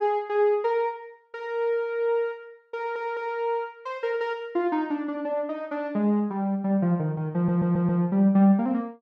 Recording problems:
stutter; at 3 s and at 7.5 s

